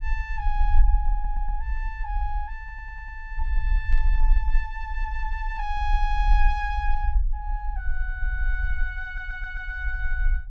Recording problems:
rumble; below 42 Hz, strongest tone 22 Hz, SNR -5 dB
audio stuttering; at 1 s, at 2.5 s and at 9 s
static burst; at 4 s; peak -14 dB vs average level

